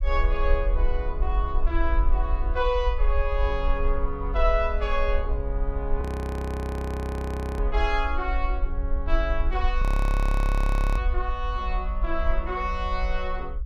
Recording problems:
low-frequency rumble; below 54 Hz, SNR -1 dB
frozen audio; at 6 s for 1.5 s and at 10 s for 1 s

